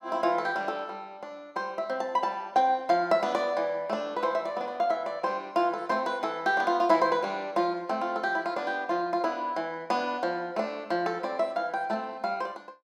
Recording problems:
none

